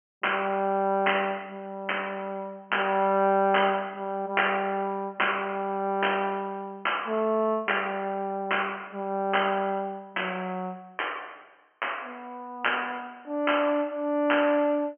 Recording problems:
treble missing; nothing above 3.1 kHz

